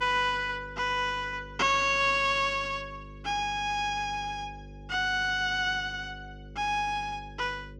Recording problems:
electrical hum; 50 Hz, harmonics up to 550 Hz, SNR 18 dB

